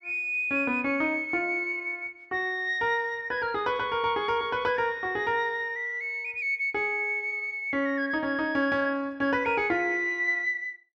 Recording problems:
none

